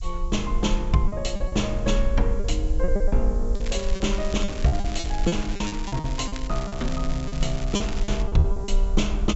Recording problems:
treble cut off; nothing above 7.7 kHz
hiss; slope +7 dB per octave, SNR 27 dB
rumble; below 46 Hz, strongest tone 24 Hz, SNR 2 dB
packet loss; 12% of the sound replaced, filled with repeated pitch periods
crackle; from 3.5 to 8 s; loose cable, SNR 12 dB

